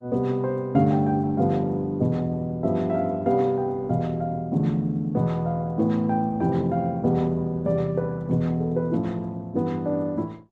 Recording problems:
lossy compression; Opus, log-spectral distance 2 dB, nothing above 11.3 kHz

